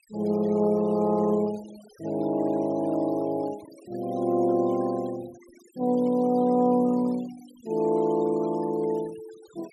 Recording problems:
noise reduction artefacts; signal-to-artefact ratio 25 dB

